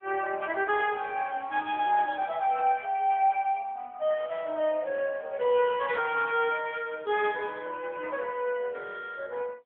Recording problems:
phone line; 340 Hz to 3.3 kHz, AMR-NB

